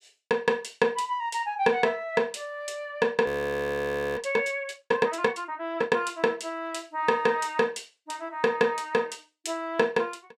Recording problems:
audio freezing; at 3.5 s for 1 s

